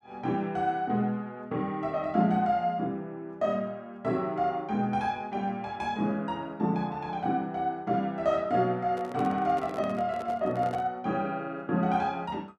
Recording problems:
handling noise; from 9 to 11 s; peak -7 dB vs average level

